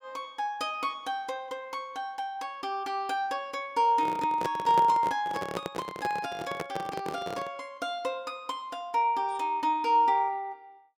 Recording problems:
microphone handling noise; from 4 to 7.5 s; peak +1 dB vs average level

